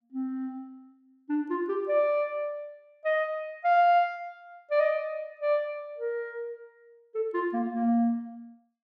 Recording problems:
none

